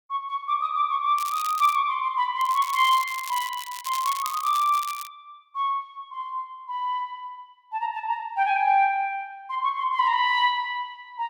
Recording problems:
crackle; at 1 s and from 2.5 to 5 s; loose cable, SNR 13 dB

